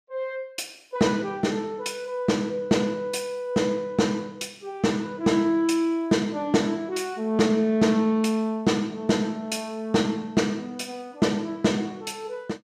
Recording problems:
none

